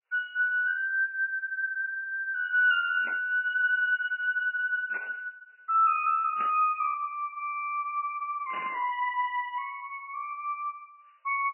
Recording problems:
lossy compression; MP3, log-spectral distance 3 dB, nothing above 2.5 kHz
burst of static; 4 times, first at 3 s; peak -9 dB vs average level

